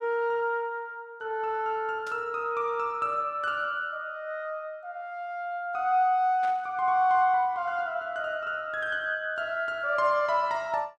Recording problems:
burst of static; at 2 s and at 6.5 s; peak -13 dB vs average level

